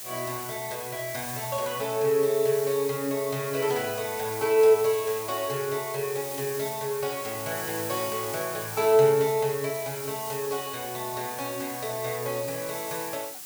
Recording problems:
hiss; SNR 8 dB

